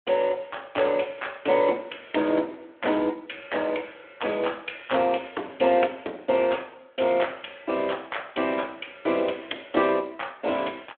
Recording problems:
telephone audio; 240 Hz to 3.5 kHz, Speex

